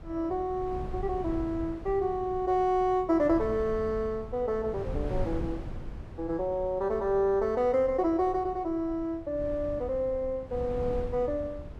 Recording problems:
wind on the microphone; below 150 Hz, SNR 12 dB

